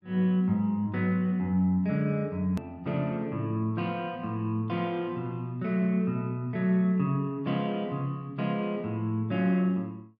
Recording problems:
edit click; at 2.5 s

